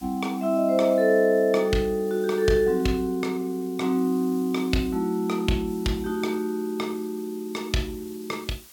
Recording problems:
background hiss; slope +1 dB per octave, SNR 23 dB

